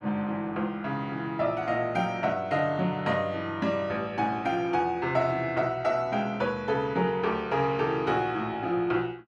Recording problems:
none

